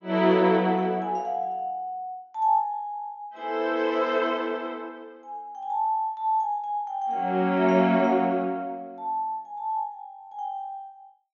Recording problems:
treble cut off; nothing above 6.7 kHz

